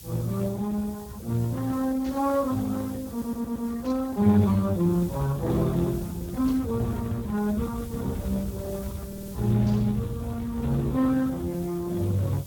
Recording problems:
lossy compression; Speex, log-spectral distance 3 dB, nothing above 16 kHz
hiss; SNR 20 dB
rumble; below 140 Hz, SNR 13 dB
burst of static; 4 times, first at 2 s; peak -13 dB vs average level
audio stuttering; at 3 s and at 9 s

